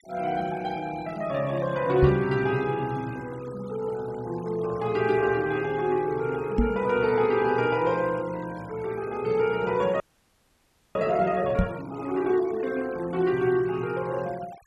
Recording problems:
denoising artefacts; signal-to-artefact ratio 21 dB
knock on the microphone; at 2 s, at 6.5 s and at 12 s; peak +7 dB vs average level
audio freezing; at 10 s for 1 s

